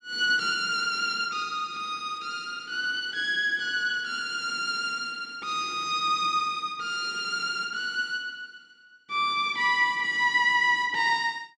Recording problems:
none

